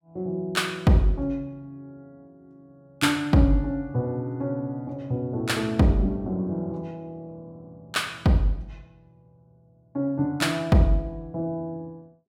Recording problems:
none

